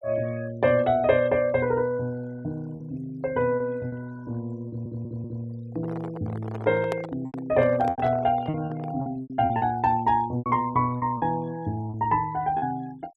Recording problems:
noise reduction artefacts; signal-to-artefact ratio 24 dB
packet loss; 7% of the sound replaced, filled with repeated pitch periods
stutter; at 4.5 s
microphone handling noise; from 5.5 to 9 s; peak -2 dB vs average level

